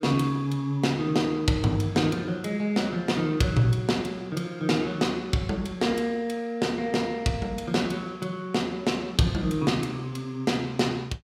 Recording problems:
none

